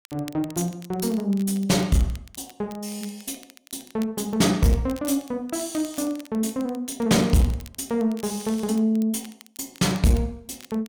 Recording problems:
distortion; soft clipping, signal-to-distortion ratio 10 dB
crackling; vinyl, SNR 22 dB

